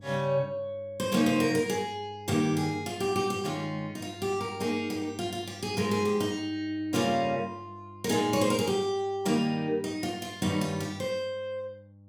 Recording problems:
hum; 50 Hz, harmonics up to 600 Hz, SNR 20 dB

